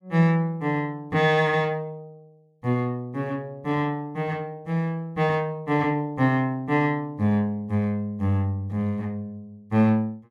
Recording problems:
none

